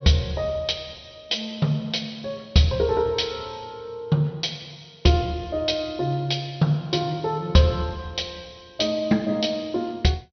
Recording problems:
treble cut off; nothing above 6 kHz

